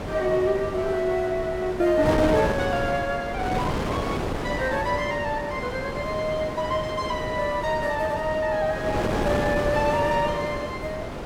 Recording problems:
wind on the microphone; below 850 Hz, SNR 4 dB

